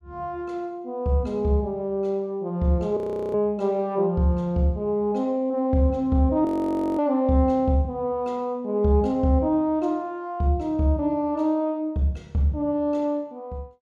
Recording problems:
frozen audio; at 3 s and at 6.5 s for 0.5 s

